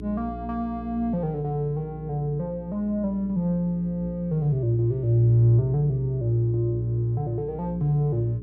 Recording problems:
hum; 60 Hz, harmonics up to 420 Hz, SNR 14 dB

